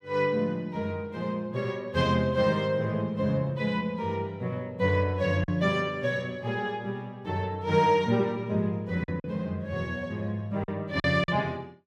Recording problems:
packet loss; 2% of the sound replaced, filled with silence

